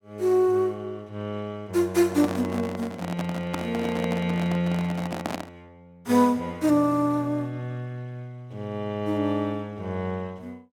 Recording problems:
handling noise; from 2 to 5.5 s; peak 0 dB vs average level

